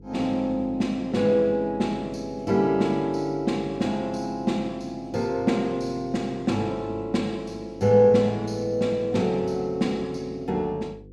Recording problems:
electrical hum; 50 Hz, harmonics up to 500 Hz, SNR 22 dB

